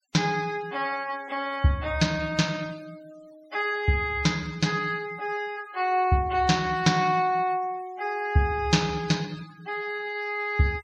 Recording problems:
noise reduction artefacts; signal-to-artefact ratio 23 dB

